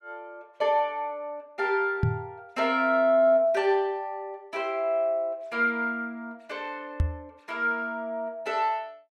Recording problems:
knock on the microphone; at 2 s and at 7 s; peak +5 dB vs average level

